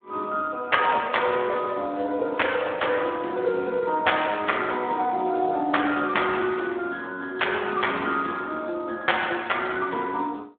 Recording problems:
phone line; 240 Hz to 3.5 kHz, Speex

